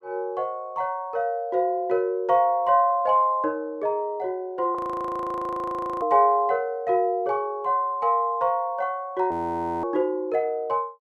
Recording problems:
audio freezing; at 5 s for 1.5 s and at 9.5 s for 0.5 s

